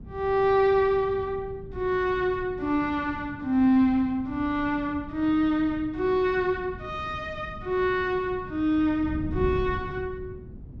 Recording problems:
wind on the microphone; below 180 Hz, SNR 15 dB

